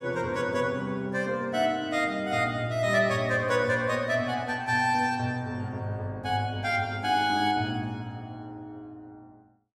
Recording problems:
none

